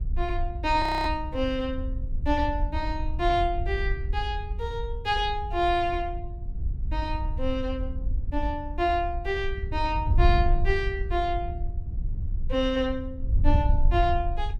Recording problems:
wind noise; below 70 Hz, SNR 2 dB
audio freezing; at 1 s

